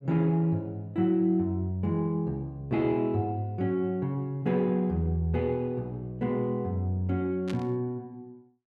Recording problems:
static burst; at 7.5 s; peak -8 dB vs average level

